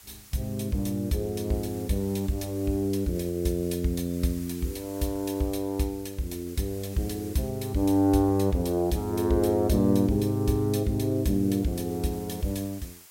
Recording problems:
hiss; slope +1 dB per octave, SNR 20 dB

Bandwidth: 16 kHz